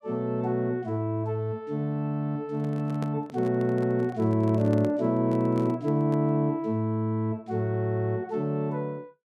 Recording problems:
microphone handling noise; from 2.5 to 6.5 s; peak -6 dB vs average level

